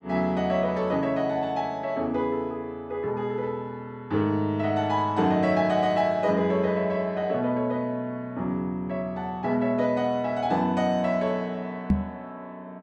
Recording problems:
microphone bump; at 12 s; peak +8 dB vs average level

